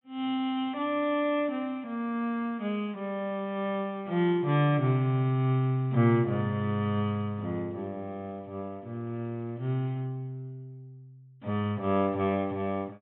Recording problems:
treble cut off; nothing above 3.7 kHz

